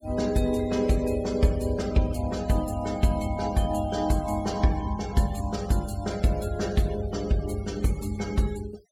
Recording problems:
noise reduction artefacts; signal-to-artefact ratio 19 dB

